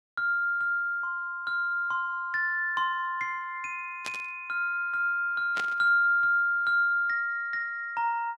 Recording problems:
static burst; at 4 s and at 5.5 s; peak -5 dB vs average level

